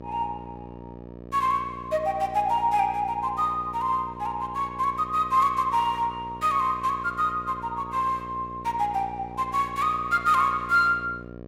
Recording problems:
electrical hum; 60 Hz, harmonics up to 1.3 kHz, SNR 16 dB

